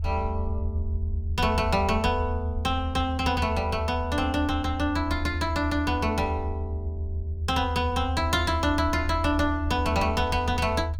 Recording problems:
low-frequency rumble; below 82 Hz, strongest tone 80 Hz, SNR 4 dB

